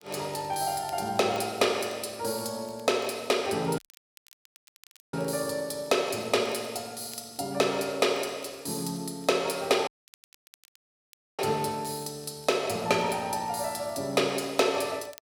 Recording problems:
crackling; vinyl, SNR 28 dB
audio cutting out; at 4 s for 1.5 s and at 10 s for 1.5 s

